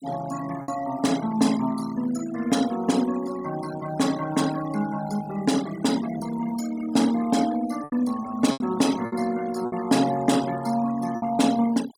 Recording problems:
noise reduction artefacts; signal-to-artefact ratio 14 dB
lost packets; 4% of the sound replaced, filled with repeated pitch periods

